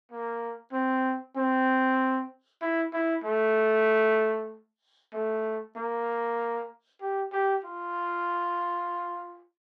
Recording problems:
none

